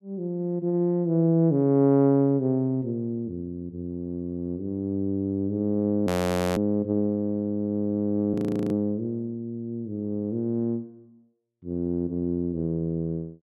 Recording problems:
frozen audio; at 6 s and at 8.5 s

